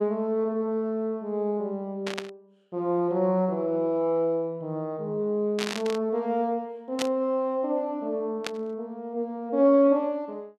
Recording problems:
burst of static; 4 times, first at 2 s; peak +1 dB vs average level

